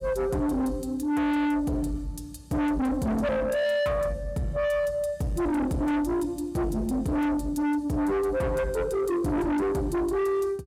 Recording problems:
distortion; soft clipping, signal-to-distortion ratio 6 dB

